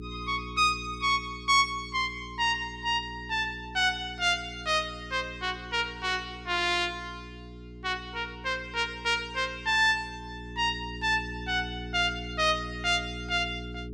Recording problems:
electrical hum; 60 Hz, harmonics up to 420 Hz, SNR 14 dB

